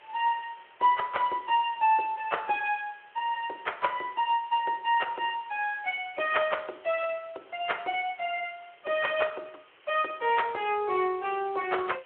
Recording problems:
phone line; 320 Hz to 3.3 kHz, Speex
background hiss; SNR 27 dB

